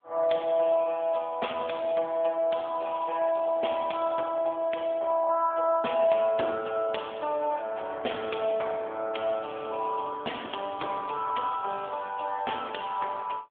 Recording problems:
telephone audio; 300 Hz to 3.5 kHz, AMR-NB

